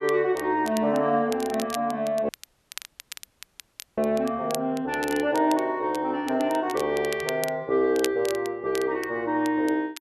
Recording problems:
crackle; vinyl, SNR 15 dB
dropout; at 2.5 s for 1.5 s

